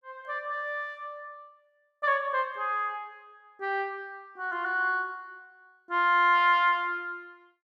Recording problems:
none

